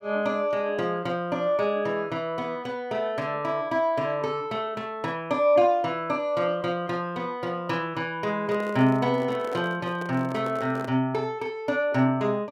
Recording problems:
handling noise; from 8.5 to 11 s; peak -7 dB vs average level

